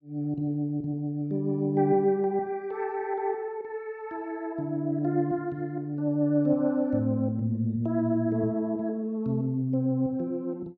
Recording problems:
none

